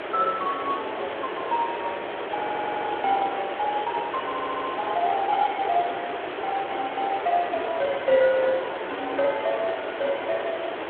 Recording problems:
telephone audio; 320 Hz to 3.9 kHz, Speex
background hiss; SNR 5 dB
stutter; at 2.5 s and at 4.5 s

